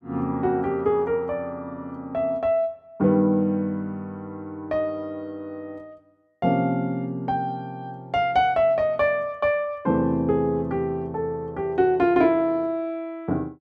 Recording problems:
none

